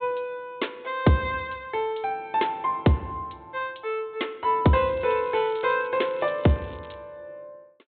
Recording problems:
treble missing; nothing above 4 kHz
crackling; from 5 to 7 s; loose cable, SNR 27 dB

